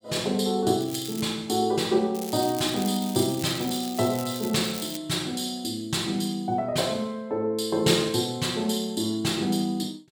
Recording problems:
crackling; at 1 s and from 2 to 5 s; loose cable, SNR 12 dB

